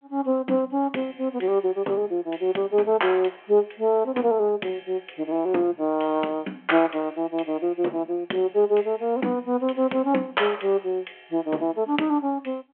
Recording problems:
telephone audio; 220 Hz to 3.3 kHz, G.726

